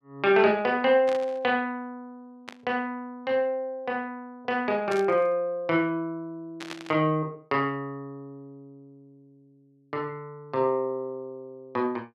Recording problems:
static burst; 4 times, first at 1 s; peak -6 dB vs average level

